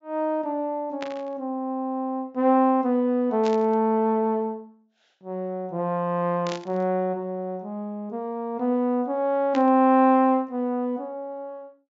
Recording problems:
treble missing; nothing above 7.6 kHz
static burst; 4 times, first at 1 s; peak -7 dB vs average level

